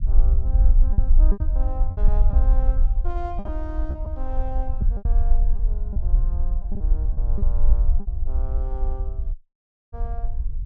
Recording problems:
rumble; below 48 Hz, SNR -15 dB
packet loss; 8% of the sound replaced, filled with repeated pitch periods
dropout; at 9.5 s for 0.5 s

